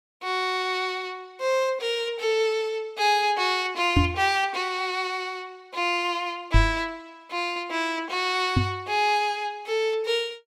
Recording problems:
knock on the microphone; at 4 s, at 6.5 s and at 8.5 s; peak +8 dB vs average level

